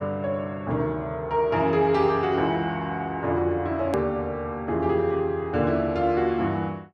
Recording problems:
edit click; at 4 s

